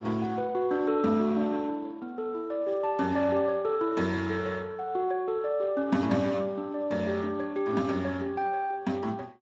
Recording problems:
lossy compression; Speex, log-spectral distance 3 dB, nothing above 7.3 kHz

